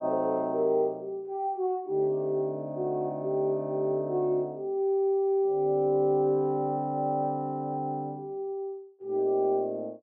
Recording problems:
none

